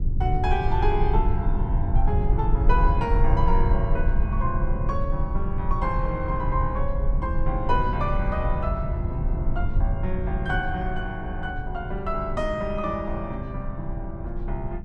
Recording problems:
rumble; below 70 Hz, SNR -1 dB

